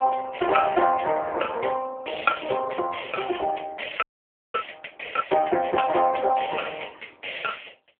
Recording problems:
telephone audio; 370 Hz to 2.5 kHz, AMR-NB
frozen audio; at 4 s for 0.5 s

